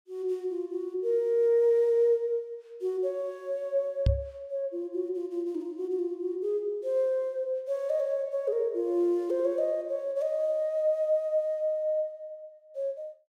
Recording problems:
knock on the microphone; at 4 s; peak +7 dB vs average level

